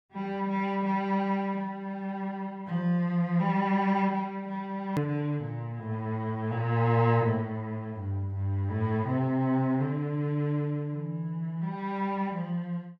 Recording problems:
click at an edit; at 5 s

